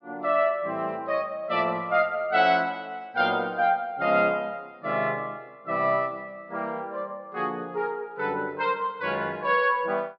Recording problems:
low-pass filter; nothing above 5.5 kHz

